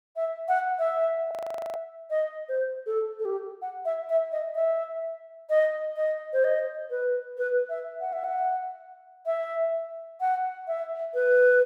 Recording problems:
frozen audio; at 1.5 s

